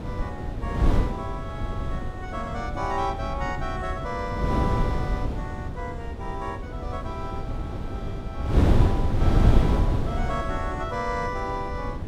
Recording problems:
wind on the microphone; below 180 Hz, SNR -5 dB

